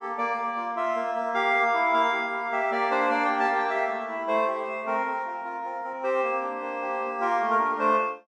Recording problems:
none

